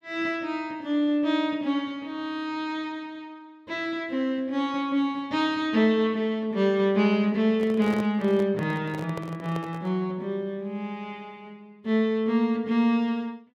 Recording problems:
microphone handling noise; from 7.5 to 10 s; peak -5 dB vs average level

